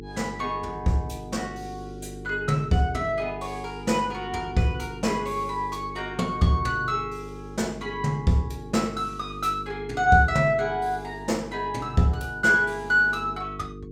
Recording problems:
hum; 50 Hz, harmonics up to 450 Hz, SNR 14 dB

